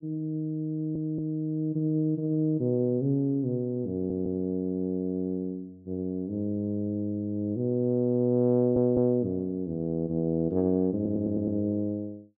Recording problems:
audio stuttering; 4 times, first at 0.5 s

